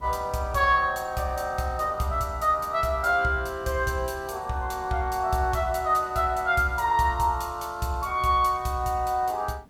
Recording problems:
hiss; slope -8 dB per octave, SNR 27 dB

